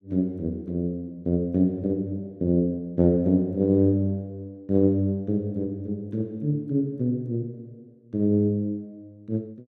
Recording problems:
none

